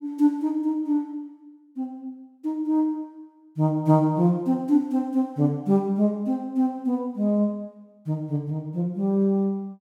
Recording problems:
none

